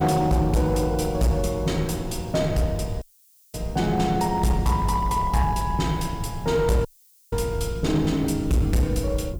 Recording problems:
distortion; hard clipping, uneven, signal-to-distortion ratio 11 dB
background hiss; slope +9 dB per octave, SNR 29 dB
rumble; below 120 Hz, SNR 12 dB
dropout; at 3 s for 0.5 s and at 7 s

